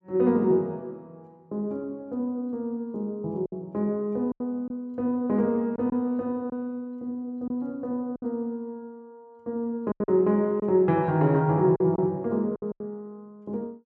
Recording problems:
packet loss; 5% of the sound replaced, filled with silence

